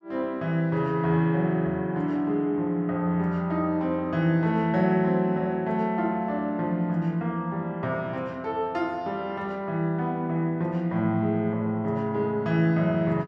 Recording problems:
none

